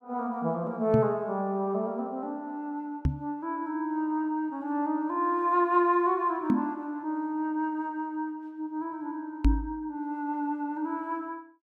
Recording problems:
microphone thump; 4 times, first at 1 s; peak +10 dB vs average level

